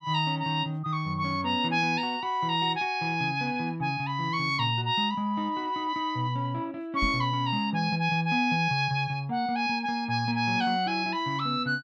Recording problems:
knock on the microphone; at 7 s; peak -1 dB vs average level

